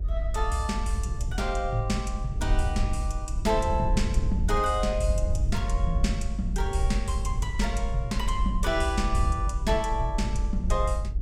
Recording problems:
low-frequency rumble; below 66 Hz, SNR 0 dB

